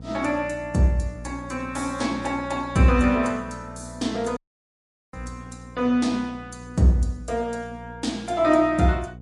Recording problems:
lossy compression; MP3, log-spectral distance 2 dB, nothing above 11 kHz
electrical hum; 60 Hz, harmonics up to 540 Hz, SNR 18 dB
audio cutting out; at 4.5 s for 1 s

